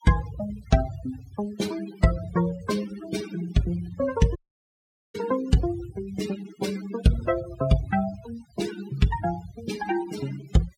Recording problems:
denoising artefacts; signal-to-artefact ratio 13 dB
dropout; at 4.5 s for 1 s

